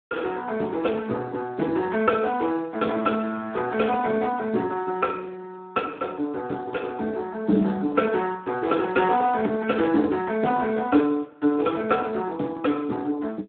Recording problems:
phone line; 190 Hz to 2.6 kHz, Speex

